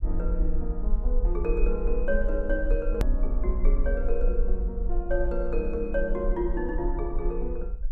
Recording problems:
low-frequency rumble; below 42 Hz, SNR -1 dB
hard cut with a click; at 3 s

